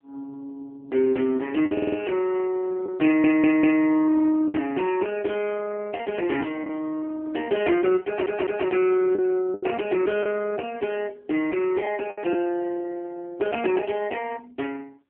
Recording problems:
phone line; 240 Hz to 3.1 kHz, AMR-NB
packet loss; 3% of the sound replaced, filled with the last packet
stutter; at 1.5 s, at 3 s and at 8 s

